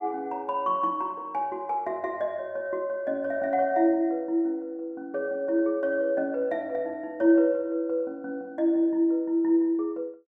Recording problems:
none

